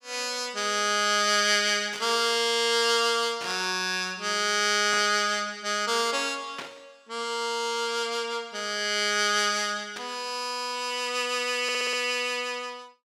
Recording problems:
static burst; 5 times, first at 2 s; peak -7 dB vs average level
stutter; at 12 s

